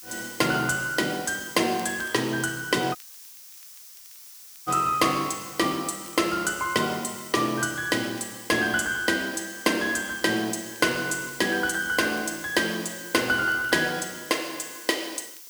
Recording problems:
hiss; SNR 16 dB
crackling; vinyl, SNR 29 dB
audio cutting out; at 3 s for 1.5 s

